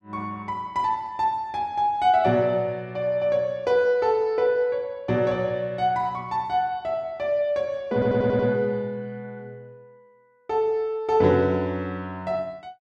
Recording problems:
stutter; at 8 s

